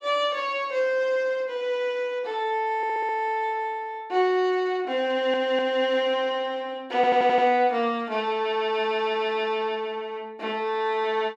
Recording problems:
stutter; at 3 s, at 5 s and at 7 s

